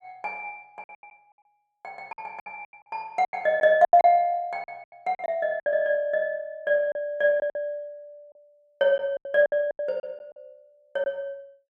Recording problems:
packet loss; 13% of the sound replaced, filled with silence

